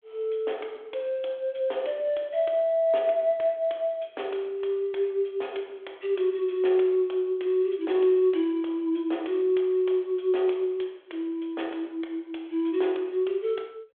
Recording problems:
phone line; 280 Hz to 3.5 kHz, G.726

